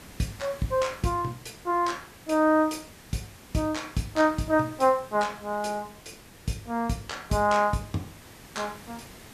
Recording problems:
hiss; slope -3 dB per octave, SNR 20 dB

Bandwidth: 14.5 kHz